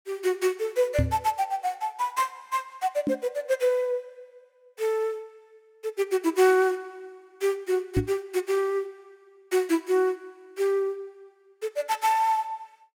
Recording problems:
knock on the microphone; at 1 s, at 3 s and at 8 s; peak +5 dB vs average level

